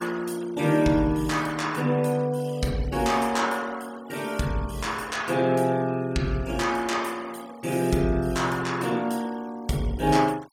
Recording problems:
denoising artefacts; signal-to-artefact ratio 22 dB

